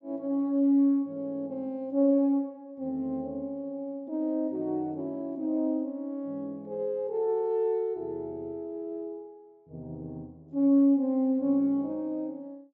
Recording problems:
treble missing; nothing above 8 kHz

